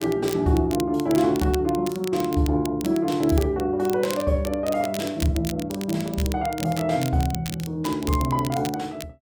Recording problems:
crackling; vinyl, SNR 14 dB

